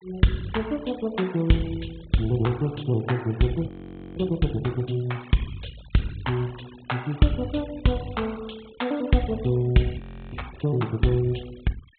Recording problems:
treble missing; nothing above 4 kHz
noise reduction artefacts; signal-to-artefact ratio 22 dB
audio freezing; at 3.5 s and at 10 s

